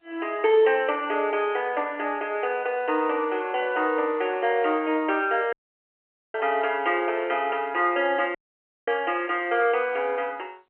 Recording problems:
telephone audio; 320 Hz to 3.1 kHz, G.711
dropout; at 5.5 s for 1 s and at 8.5 s for 0.5 s

